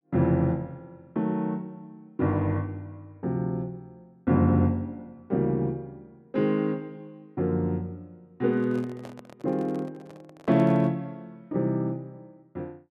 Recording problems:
handling noise; from 8.5 to 11 s; peak -11 dB vs average level

